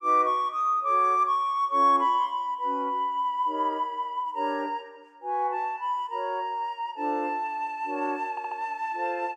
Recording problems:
stutter; at 8.5 s

